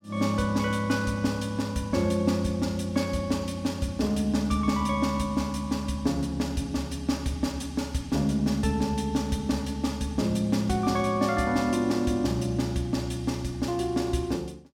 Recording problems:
none

